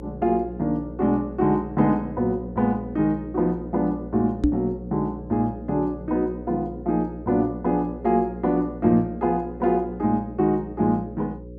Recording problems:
electrical hum; 60 Hz, harmonics up to 540 Hz, SNR 14 dB
microphone thump; at 4.5 s; peak +7 dB vs average level

